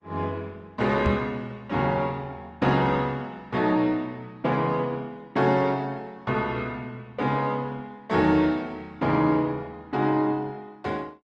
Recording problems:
codec artefacts; Opus, log-spectral distance 2 dB
knock on the microphone; at 1 s; peak +4 dB vs average level

